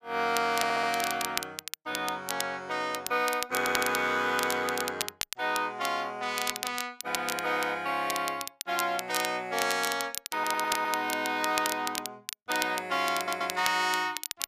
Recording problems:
crackling; vinyl, SNR 7 dB
audio stuttering; 4 times, first at 0.5 s

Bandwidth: 14.5 kHz